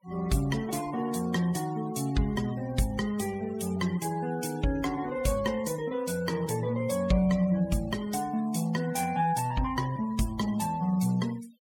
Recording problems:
denoising artefacts; signal-to-artefact ratio 18 dB

